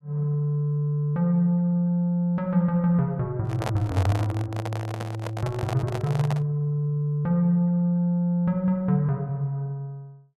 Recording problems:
microphone handling noise; from 3.5 to 6.5 s; peak -1 dB vs average level

